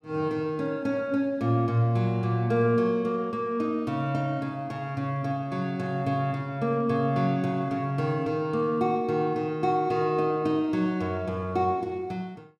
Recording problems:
none

